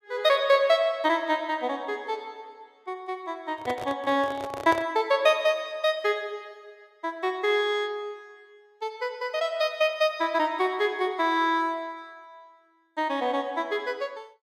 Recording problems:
microphone handling noise; from 3.5 to 5 s; peak -2 dB vs average level

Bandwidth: 15 kHz